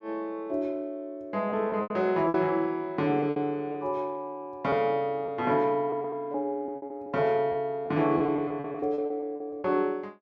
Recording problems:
packet loss; 9% of the sound replaced, filled with repeated pitch periods

